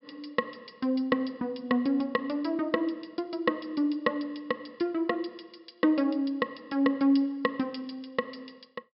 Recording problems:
low-pass filter; nothing above 5.3 kHz

